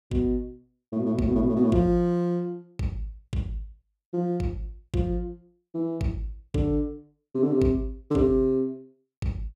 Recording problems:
none

